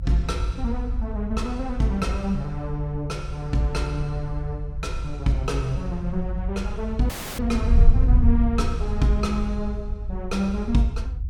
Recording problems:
rumble; below 72 Hz, strongest tone 50 Hz, SNR 9 dB
wind noise; below 74 Hz, SNR 2 dB
dropout; at 7 s

